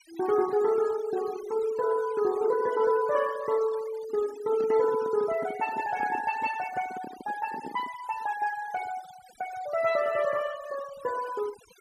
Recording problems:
noise reduction artefacts; signal-to-artefact ratio 17 dB
microphone handling noise; from 4.5 to 8 s; peak -7 dB vs average level

